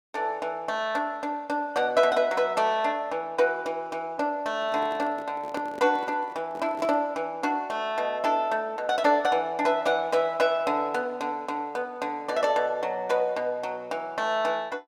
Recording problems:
handling noise; from 4.5 to 7 s; peak -6 dB vs average level

